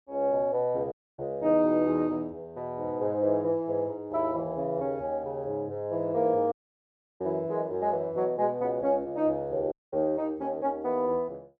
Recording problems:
dropout; at 1 s, at 6.5 s for 0.5 s and at 9.5 s

